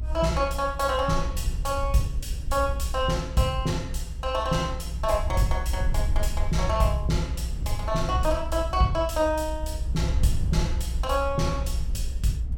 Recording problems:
low-frequency rumble; below 64 Hz, SNR 3 dB

